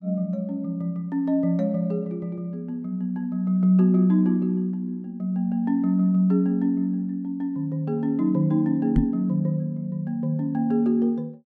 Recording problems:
microphone bump; at 9 s; peak +4 dB vs average level

